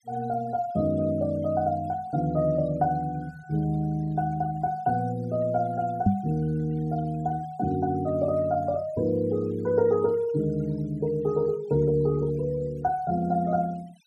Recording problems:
noise reduction artefacts; signal-to-artefact ratio 25 dB
microphone bump; at 6 s; peak +8 dB vs average level

